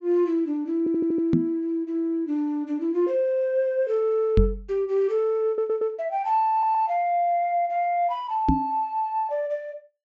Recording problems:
low-pass filter; nothing above 8 kHz
stutter; at 1 s, at 5.5 s and at 6.5 s
knock on the microphone; at 1.5 s, at 4.5 s and at 8.5 s; peak +7 dB vs average level

